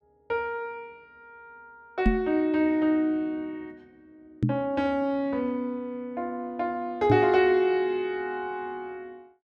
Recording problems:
microphone bump; at 2 s, at 4.5 s and at 7 s; peak +8 dB vs average level

